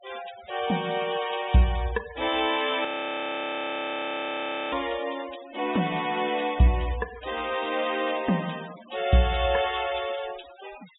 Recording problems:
low-pass filter; nothing above 4 kHz
denoising artefacts; signal-to-artefact ratio 16 dB
audio freezing; at 3 s for 2 s

